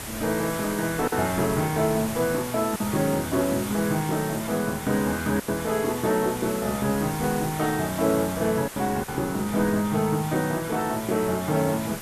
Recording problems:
hum; 60 Hz, harmonics up to 720 Hz, SNR 21 dB
hiss; slope -2 dB per octave, SNR 10 dB
wind noise; below 390 Hz, SNR 21 dB
packet loss; 2% of the sound replaced, filled with silence

